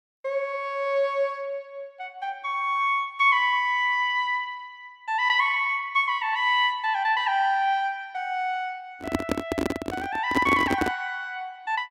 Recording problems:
microphone handling noise; from 9 to 11 s; peak +3 dB vs average level

